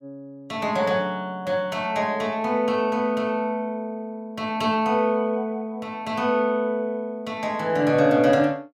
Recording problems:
none

